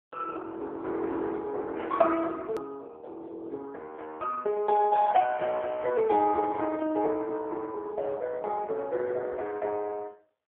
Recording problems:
phone line; 280 Hz to 2.2 kHz, AMR-NB
edit click; at 2.5 s

